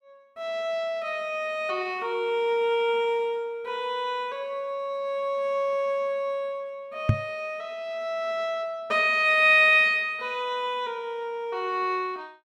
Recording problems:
knock on the microphone; at 7 s; peak +8 dB vs average level

